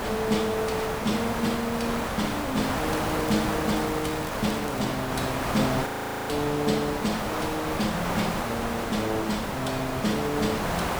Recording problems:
hiss; SNR 1 dB
crackling; from 3 to 5 s; loose cable, SNR 16 dB
audio freezing; at 6 s

